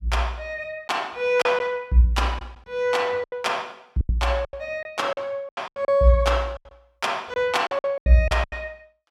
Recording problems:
packet loss; 12% of the sound replaced, filled with silence

